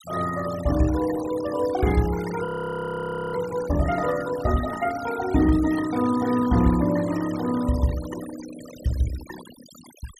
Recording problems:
denoising artefacts; signal-to-artefact ratio 16 dB
frozen audio; at 2.5 s for 1 s

